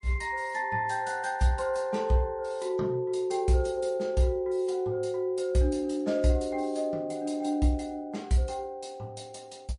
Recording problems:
codec artefacts; MP3, log-spectral distance 2 dB, nothing above 10.4 kHz

